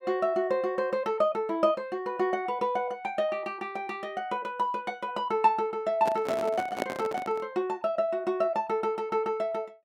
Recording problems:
handling noise; from 6 to 7.5 s; peak +3 dB vs average level

